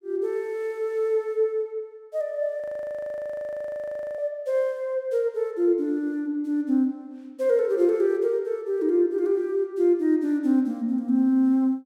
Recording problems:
frozen audio; at 2.5 s for 1.5 s

